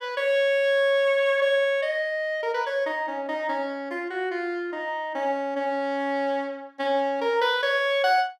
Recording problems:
none

